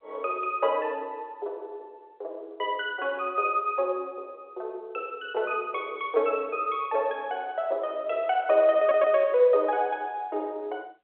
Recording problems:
phone line; 340 Hz to 3.7 kHz, G.711
audio stuttering; at 9 s

